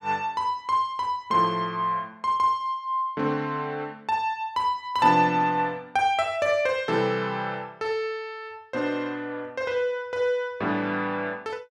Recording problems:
none

